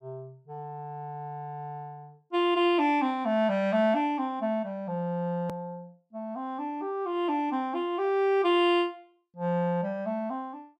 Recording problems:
hard cut with a click; at 5.5 s

